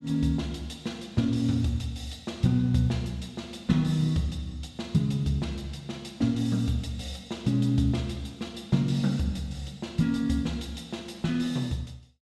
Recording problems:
none

